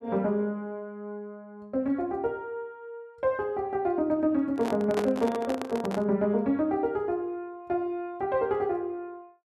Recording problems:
handling noise; from 4.5 to 6 s; peak +2 dB vs average level

